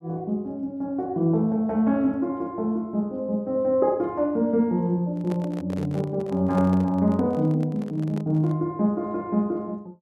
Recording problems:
handling noise; from 5 to 8.5 s; peak -6 dB vs average level

